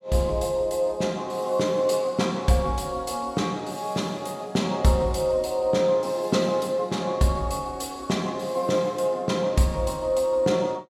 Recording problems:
none

